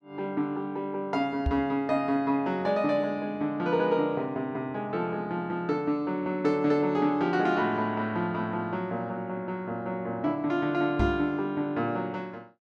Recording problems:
microphone thump; at 1.5 s and at 11 s; peak +3 dB vs average level

